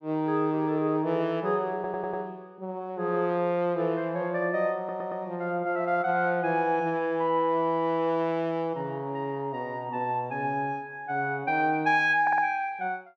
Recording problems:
audio stuttering; at 1.5 s, at 5 s and at 12 s

